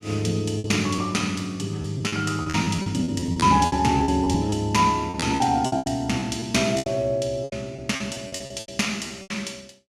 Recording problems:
packet loss; 15% of the sound replaced, filled with repeated pitch periods

